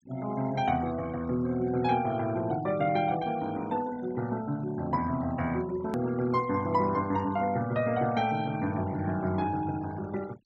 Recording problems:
treble missing; nothing above 8 kHz
denoising artefacts; signal-to-artefact ratio 19 dB
edit click; at 6 s

